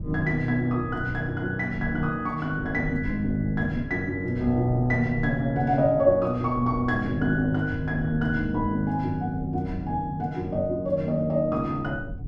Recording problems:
low-frequency rumble; below 140 Hz, SNR 13 dB

